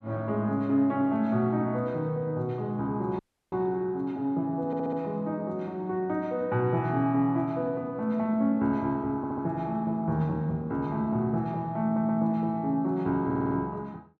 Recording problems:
dropout; at 3 s
audio stuttering; 4 times, first at 4.5 s

